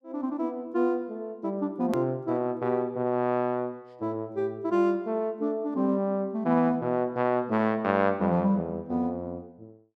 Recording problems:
click at an edit; at 2 s

